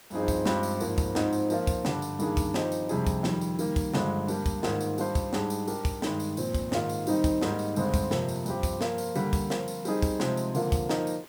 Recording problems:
hiss; slope -2 dB per octave, SNR 22 dB

